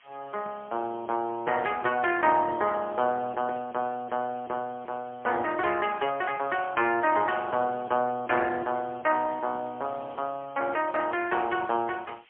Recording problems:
phone line; 260 Hz to 3.3 kHz, AMR-NB, then MP3
hiss; SNR 27 dB

